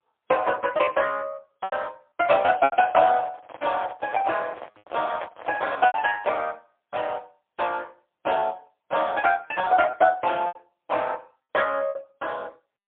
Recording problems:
telephone audio; 370 Hz to 3.5 kHz, AMR-NB, then MP3
packet loss; 7% of the sound replaced, filled with repeated pitch periods
microphone handling noise; from 2.5 to 6.5 s; peak -2 dB vs average level

